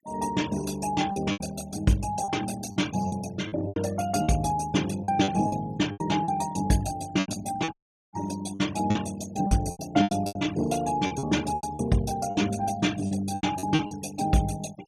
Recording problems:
noise reduction artefacts; signal-to-artefact ratio 17 dB
lost packets; 11% of the sound replaced, filled with repeated pitch periods
dropout; at 7.5 s

